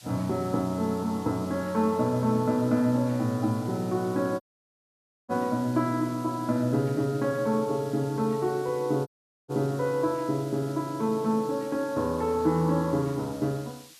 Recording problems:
background hiss; slope +3 dB per octave, SNR 21 dB
audio cutting out; at 4.5 s for 1 s and at 9 s

